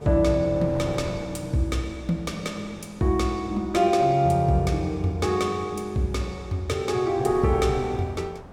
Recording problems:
wind on the microphone; below 770 Hz, SNR 18 dB

